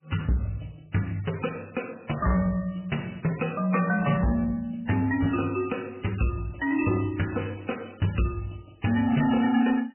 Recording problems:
lossy codec; MP3, log-spectral distance 6 dB, nothing above 2.9 kHz
distortion; soft clipping, signal-to-distortion ratio 11 dB

